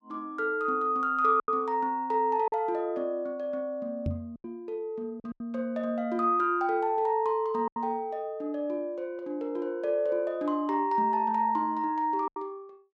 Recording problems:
packet loss; 4% of the sound replaced, filled with silence
knock on the microphone; at 4 s; peak +1 dB vs average level

